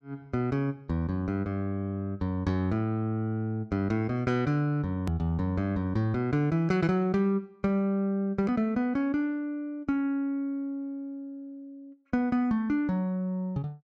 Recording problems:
click at an edit; at 5 s

